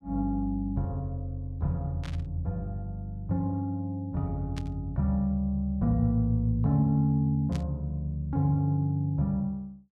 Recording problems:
burst of static; at 2 s, at 4.5 s and at 7.5 s; peak -10 dB vs average level

